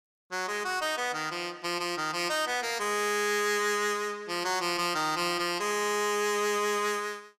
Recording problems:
distorted audio; hard clipping, uneven, signal-to-distortion ratio 10 dB

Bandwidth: 15 kHz